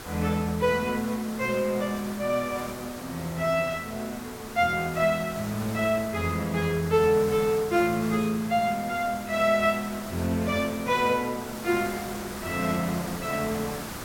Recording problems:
background hiss; SNR 12 dB

